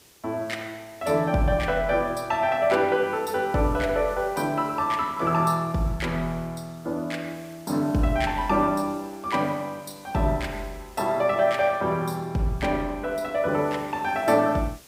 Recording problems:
hiss; SNR 25 dB

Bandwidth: 15.5 kHz